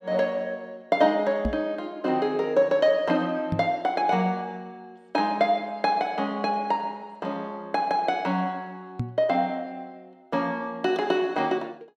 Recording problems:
microphone thump; at 1.5 s, at 3.5 s and at 9 s; peak +2 dB vs average level

